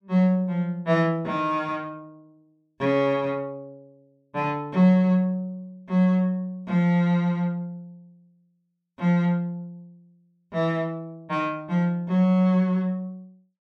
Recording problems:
none

